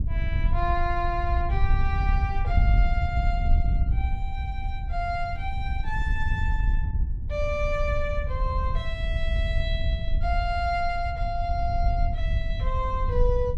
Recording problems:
wind on the microphone; below 72 Hz, SNR -3 dB

